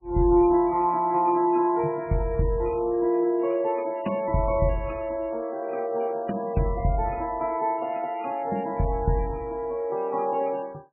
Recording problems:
lossy codec; MP3, log-spectral distance 2 dB, nothing above 2.7 kHz

